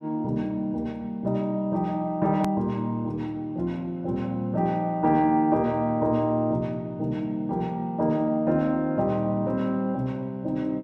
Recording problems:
hard cut with a click; at 2.5 s

